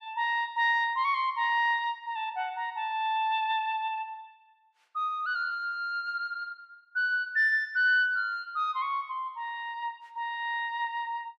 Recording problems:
none

